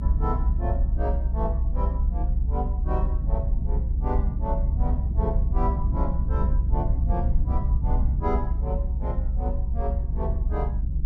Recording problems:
rumble; below 64 Hz, SNR -8 dB

